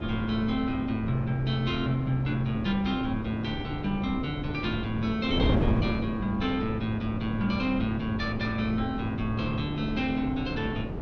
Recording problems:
wind on the microphone; below 360 Hz, SNR 5 dB

